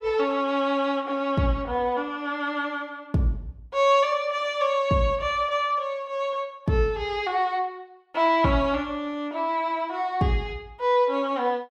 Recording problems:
none

